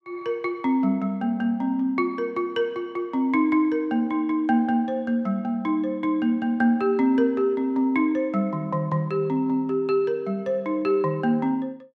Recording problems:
none

